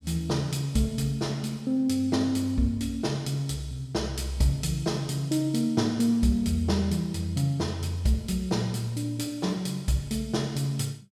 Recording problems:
none

